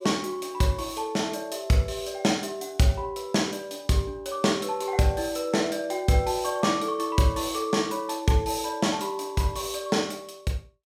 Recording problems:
none

